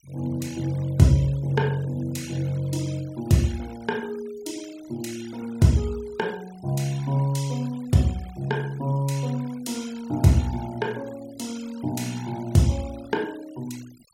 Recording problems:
noise reduction artefacts; signal-to-artefact ratio 21 dB

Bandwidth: 16 kHz